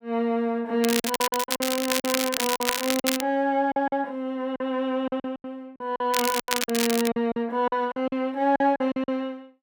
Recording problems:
lost packets; 12% of the sound replaced, filled with silence
crackle; from 1 to 3 s and at 6 s; loose cable, SNR 2 dB

